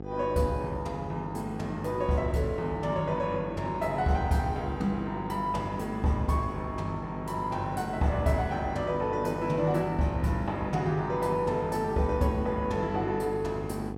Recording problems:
hum; 50 Hz, harmonics up to 1.3 kHz, SNR 9 dB

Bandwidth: 16.5 kHz